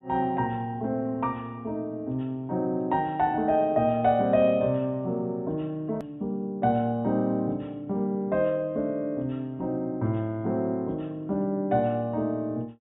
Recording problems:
treble cut off; nothing above 4 kHz
hard cut with a click; at 6 s

